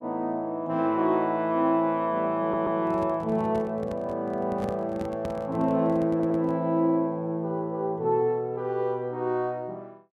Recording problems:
audio stuttering; at 2.5 s and at 6 s
microphone handling noise; from 2.5 to 6.5 s; peak -4 dB vs average level

